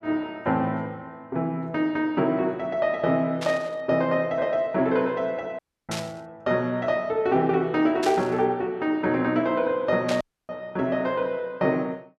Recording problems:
static burst; 4 times, first at 3.5 s; peak -3 dB vs average level
dropout; at 5.5 s and at 10 s

